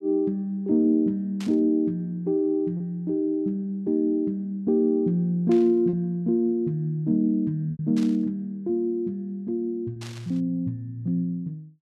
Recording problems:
lost packets; 1.7% of the sound replaced, filled with repeated pitch periods
static burst; 4 times, first at 1.5 s; peak -11 dB vs average level

